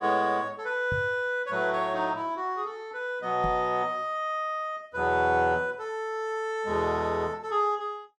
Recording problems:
microphone thump; at 1 s and at 3.5 s; peak -3 dB vs average level

